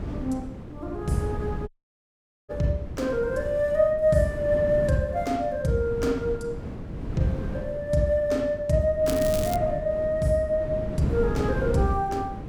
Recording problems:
wind noise; below 260 Hz, SNR 9 dB
audio cutting out; at 1.5 s for 1 s
crackle; at 9 s; loose cable, SNR 12 dB

